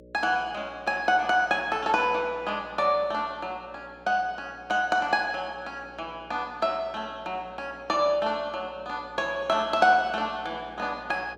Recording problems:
hum; 60 Hz, harmonics up to 600 Hz, SNR 24 dB

